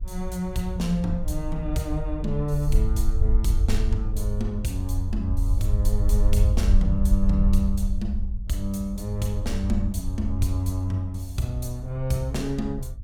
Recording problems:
hum; 50 Hz, harmonics up to 550 Hz, SNR 25 dB
rumble; below 62 Hz, SNR 0 dB

